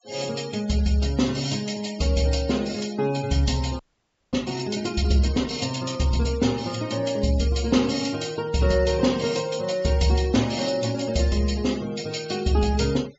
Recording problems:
treble missing; nothing above 8 kHz
denoising artefacts; signal-to-artefact ratio 18 dB
audio freezing; at 4 s for 0.5 s

